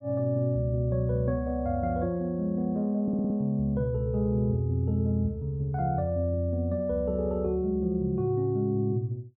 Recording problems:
stutter; at 3 s

